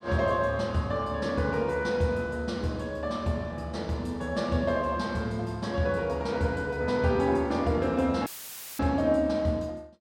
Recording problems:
dropout; at 8.5 s for 0.5 s; filled with static

